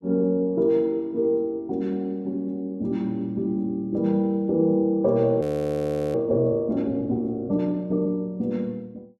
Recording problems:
frozen audio; at 5.5 s for 0.5 s

